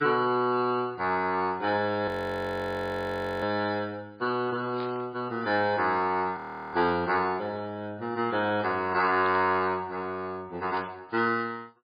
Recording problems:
lossy codec; MP3, log-spectral distance 3 dB, nothing above 17.1 kHz
audio freezing; at 2 s for 1.5 s and at 6.5 s
static burst; at 5 s, at 9 s and at 11 s; peak -9 dB vs average level

